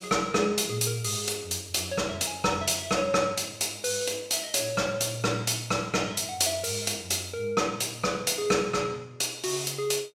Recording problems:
none

